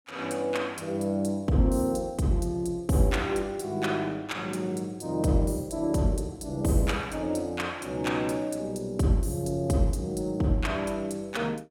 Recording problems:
none

